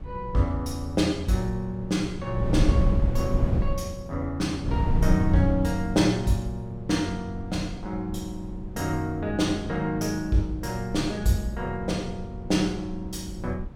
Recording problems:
wind noise; below 140 Hz, SNR 4 dB

